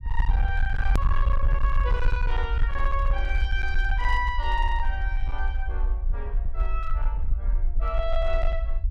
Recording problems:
distorted audio; hard clipping, signal-to-distortion ratio 11 dB
low-frequency rumble; below 52 Hz, SNR -3 dB
edit click; at 1 s

